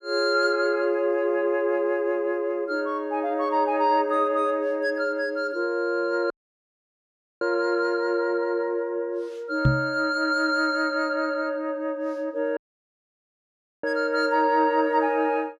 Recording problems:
audio cutting out; at 6.5 s for 1 s and at 13 s for 1.5 s
knock on the microphone; at 9.5 s; peak +7 dB vs average level

